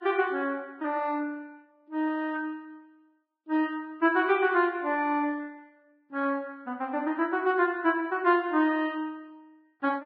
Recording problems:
lossy compression; Vorbis, log-spectral distance 2 dB

